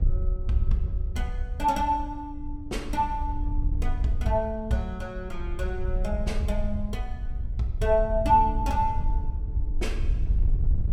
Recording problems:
wind noise; below 66 Hz, SNR 3 dB

